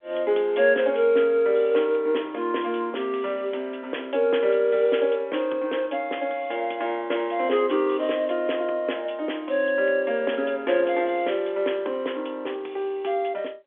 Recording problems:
phone line; 280 Hz to 3.5 kHz, G.711

